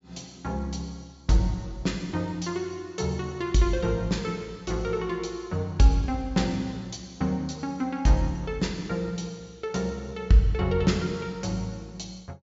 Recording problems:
low-pass filter; nothing above 7.4 kHz

